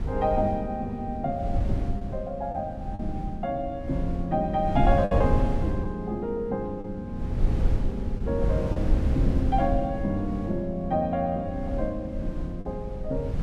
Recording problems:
wind noise; below 110 Hz, SNR 2 dB
packet loss; 2% of the sound replaced, filled with the last packet

